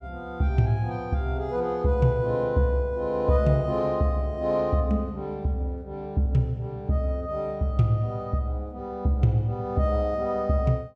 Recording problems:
none

